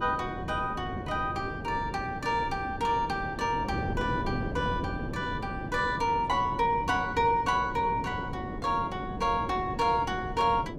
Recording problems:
wind on the microphone; below 360 Hz, SNR 8 dB

